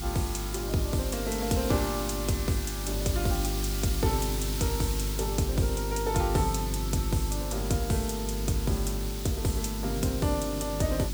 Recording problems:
hum; 50 Hz, harmonics up to 350 Hz, SNR 4 dB
background hiss; slope +3 dB per octave, SNR 6 dB

